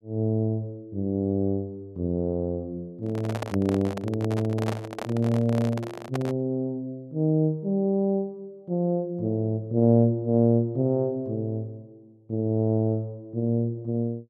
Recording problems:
handling noise; from 3 to 6.5 s; peak -1 dB vs average level

